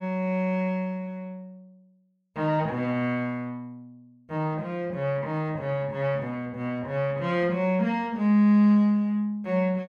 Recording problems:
none

